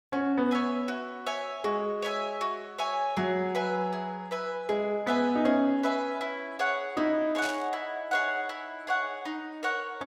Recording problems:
burst of static; at 7.5 s; peak -3 dB vs average level

